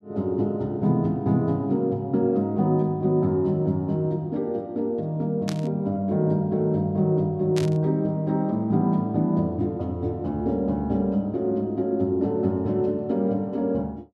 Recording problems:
static burst; at 5.5 s and at 7.5 s; peak -5 dB vs average level

